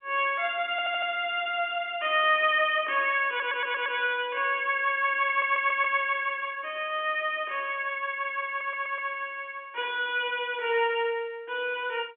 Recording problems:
phone line; 280 Hz to 3.7 kHz, G.711
stutter; 4 times, first at 0.5 s

